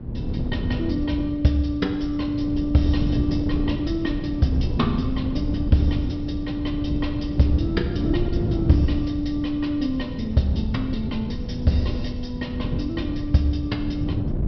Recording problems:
low-pass filter; nothing above 5.5 kHz
wind noise; below 190 Hz, SNR 3 dB

